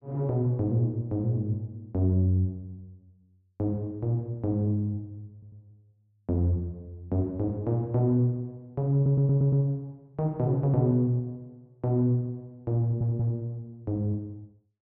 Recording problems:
stutter; at 5.5 s, at 9 s and at 13 s

